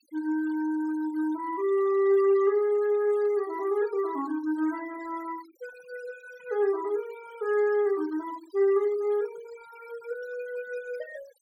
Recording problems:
denoising artefacts; signal-to-artefact ratio 22 dB

